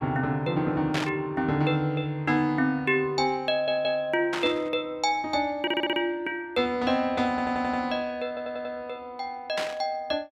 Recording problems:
burst of static; at 1 s, at 4.5 s and at 9.5 s; peak 0 dB vs average level
stutter; 4 times, first at 3.5 s

